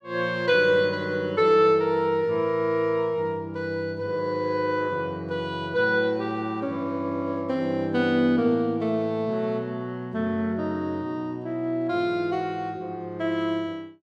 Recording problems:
none

